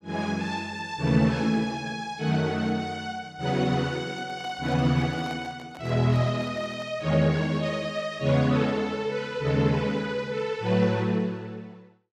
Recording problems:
microphone handling noise; from 4 to 7 s; peak -10 dB vs average level

